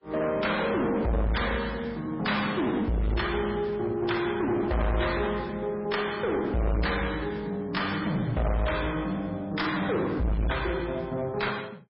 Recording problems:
lossy codec; MP3, log-spectral distance 4 dB, nothing above 5.2 kHz
distortion; hard clipping, uneven, signal-to-distortion ratio 5 dB

